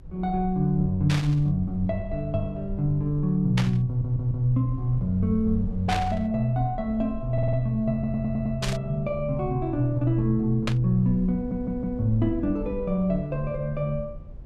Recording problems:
rumble; below 66 Hz, SNR 14 dB
burst of static; 5 times, first at 1 s; peak 0 dB vs average level
stutter; 4 times, first at 4 s

